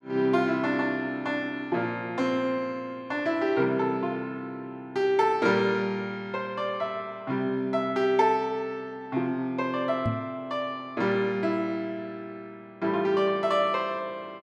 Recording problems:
knock on the microphone; at 10 s; peak +2 dB vs average level

